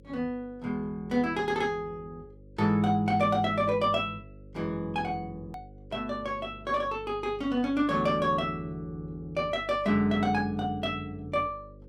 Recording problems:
hum; 50 Hz, harmonics up to 550 Hz, SNR 21 dB
edit click; at 5.5 s

